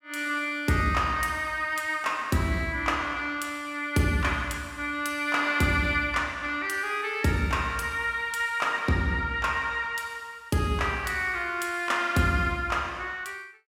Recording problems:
none

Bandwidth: 16.5 kHz